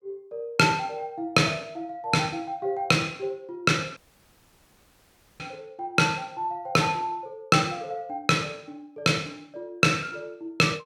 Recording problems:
dropout; at 4 s for 1.5 s

